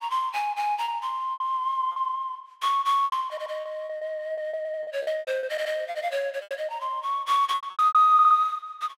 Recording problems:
packet loss; 12% of the sound replaced, filled with repeated pitch periods
stutter; 4 times, first at 3.5 s

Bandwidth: 16 kHz